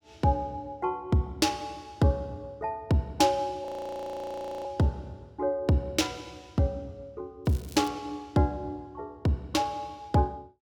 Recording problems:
audio freezing; at 3.5 s for 1 s
crackle; at 7.5 s; loose cable, SNR 21 dB

